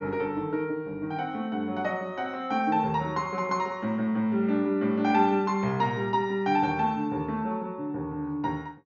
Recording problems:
low-pass filter; nothing above 6.6 kHz

